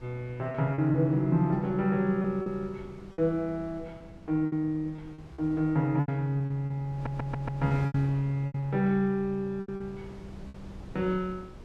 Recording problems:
wind on the microphone; below 310 Hz, SNR 19 dB
packet loss; 9% of the sound replaced, filled with repeated pitch periods
audio stuttering; at 7 s

